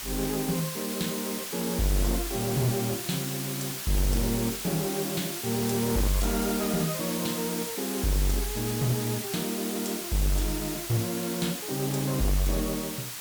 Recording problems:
distorted audio; hard clipping, uneven, signal-to-distortion ratio 5 dB
background hiss; slope +1 dB per octave, SNR 3 dB

